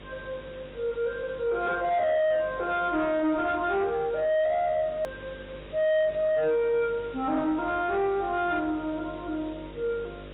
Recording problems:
codec artefacts; AAC, log-spectral distance 5 dB, nothing above 3.2 kHz
distortion; soft clipping, signal-to-distortion ratio 10 dB
hum; 50 Hz, harmonics up to 1.3 kHz, SNR 20 dB
hiss; SNR 23 dB
click at an edit; at 5 s

